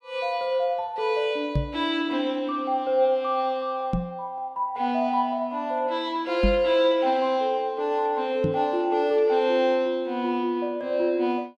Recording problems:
microphone bump; 4 times, first at 1.5 s; peak +4 dB vs average level

